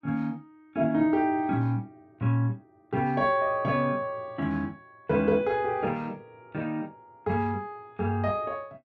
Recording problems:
none

